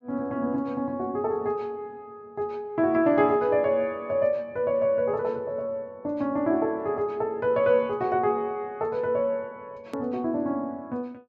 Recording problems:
low-pass filter; nothing above 8 kHz
hard cut with a click; at 10 s

